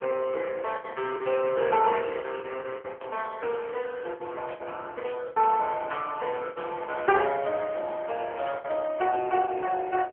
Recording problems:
phone line; 340 Hz to 3.3 kHz, AMR-NB
lost packets; 10% of the sound replaced, filled with the last packet
burst of static; 4 times, first at 3 s; peak -11 dB vs average level

